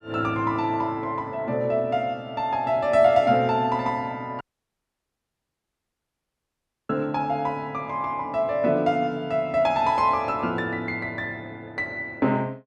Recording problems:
audio cutting out; at 4.5 s for 2.5 s

